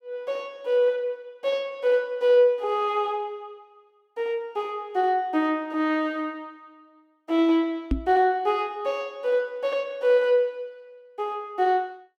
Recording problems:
microphone bump; at 8 s; peak +3 dB vs average level

